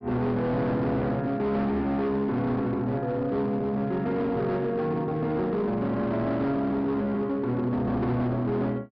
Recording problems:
low-pass filter; nothing above 5.5 kHz
distortion; hard clipping, signal-to-distortion ratio 10 dB

